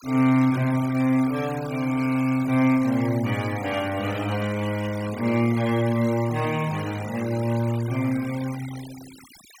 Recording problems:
noise reduction artefacts; signal-to-artefact ratio 17 dB

